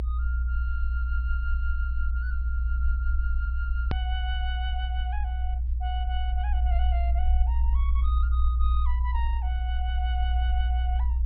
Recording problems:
low-pass filter; nothing above 5.5 kHz
low-frequency rumble; below 62 Hz, strongest tone 60 Hz, SNR -11 dB
hard cut with a click; at 4 s

